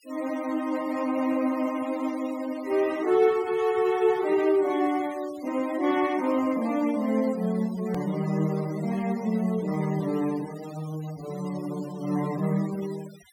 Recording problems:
noise reduction artefacts; signal-to-artefact ratio 20 dB
hard cut with a click; at 8 s

